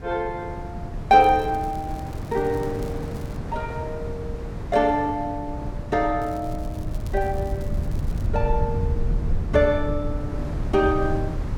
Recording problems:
low-frequency rumble; below 98 Hz, SNR 7 dB
wind on the microphone; below 390 Hz, SNR 11 dB
crackling; from 1 to 3.5 s and from 6 to 8.5 s; loose cable, SNR 27 dB

